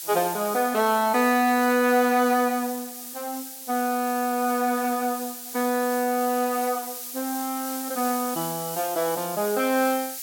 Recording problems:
background hiss; slope +6 dB per octave, SNR 9 dB

